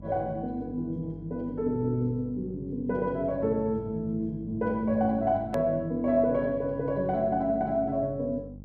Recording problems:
hum; 50 Hz, harmonics up to 550 Hz, SNR 16 dB
hard cut with a click; at 5.5 s

